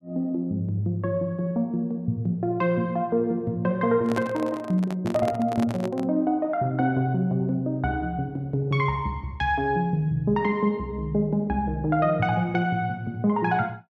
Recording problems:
microphone handling noise; from 4 to 6 s; peak -2 dB vs average level

